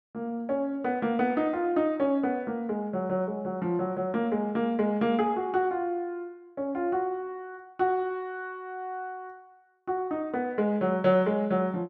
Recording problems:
none

